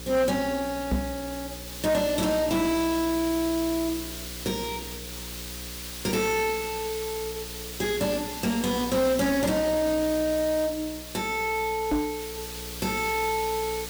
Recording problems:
distortion; soft clipping, signal-to-distortion ratio 11 dB
hum; 60 Hz, harmonics up to 540 Hz, SNR 16 dB
background hiss; slope +2 dB per octave, SNR 9 dB
knock on the microphone; at 1 s and at 12 s; peak +4 dB vs average level

